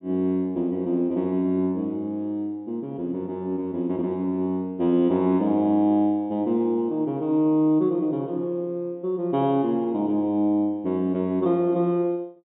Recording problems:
treble missing; nothing above 3.8 kHz

